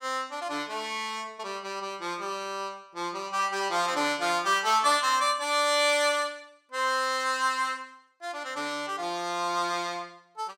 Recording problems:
none

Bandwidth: 16 kHz